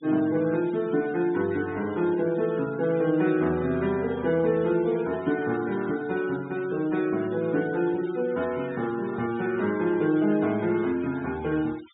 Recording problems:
treble missing; nothing above 4 kHz
noise reduction artefacts; signal-to-artefact ratio 19 dB

